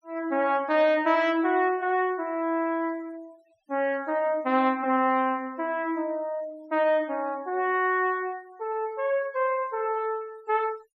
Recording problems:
noise reduction artefacts; signal-to-artefact ratio 27 dB

